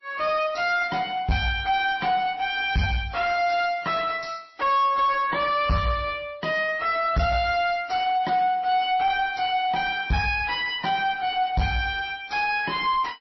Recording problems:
codec artefacts; MP3, then MP3, log-spectral distance 3 dB, nothing above 5.7 kHz
distortion; soft clipping, signal-to-distortion ratio 10 dB

